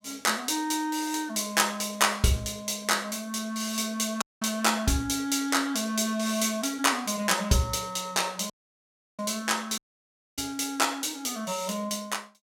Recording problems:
dropout; at 4 s, at 8.5 s for 0.5 s and at 10 s for 0.5 s

